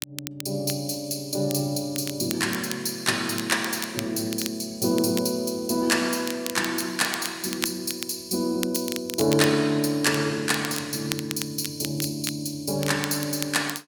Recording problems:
crackle; vinyl, SNR 10 dB

